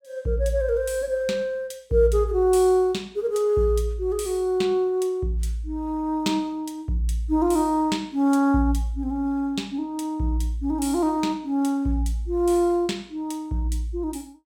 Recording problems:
none

